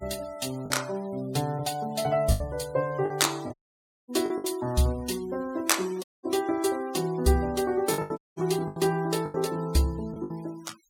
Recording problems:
noise reduction artefacts; signal-to-artefact ratio 21 dB
lost packets; 7% of the sound replaced, filled with the last packet
dropout; at 3.5 s for 0.5 s, at 6 s and at 8 s

